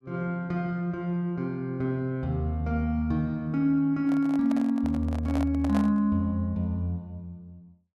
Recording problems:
handling noise; from 4 to 6 s; peak -3 dB vs average level

